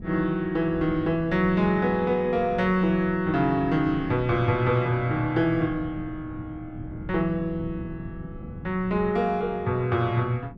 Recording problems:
wind on the microphone; below 210 Hz, SNR 16 dB

